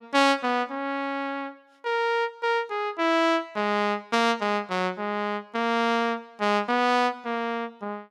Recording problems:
none

